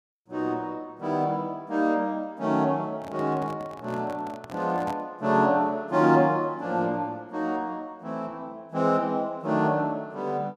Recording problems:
handling noise; from 3 to 5 s; peak -7 dB vs average level

